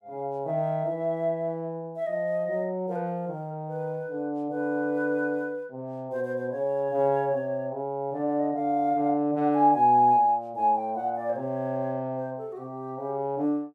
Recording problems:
none

